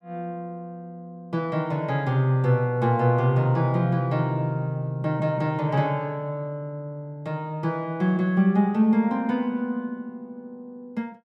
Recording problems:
none

